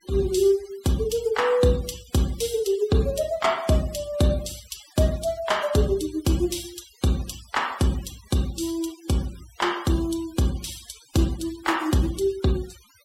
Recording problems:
noise reduction artefacts; signal-to-artefact ratio 19 dB

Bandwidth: 16.5 kHz